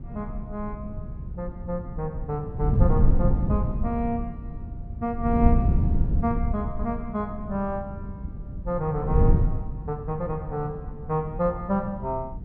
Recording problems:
wind on the microphone; below 130 Hz, SNR -1 dB

